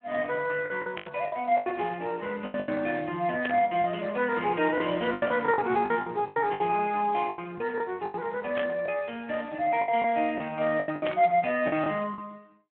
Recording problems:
telephone audio; 260 Hz to 3.5 kHz, Speex
packet loss; 11% of the sound replaced, filled with the last packet
burst of static; 4 times, first at 1 s; peak -1 dB vs average level

